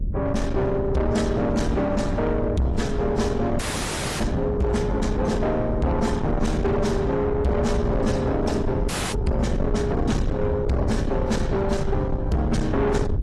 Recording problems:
codec artefacts; AAC, log-spectral distance 2 dB
distorted audio; soft clipping, signal-to-distortion ratio 8 dB
electrical hum; 60 Hz, harmonics up to 600 Hz, SNR 21 dB
low-frequency rumble; below 180 Hz, SNR 4 dB
audio freezing; at 3.5 s for 0.5 s and at 9 s

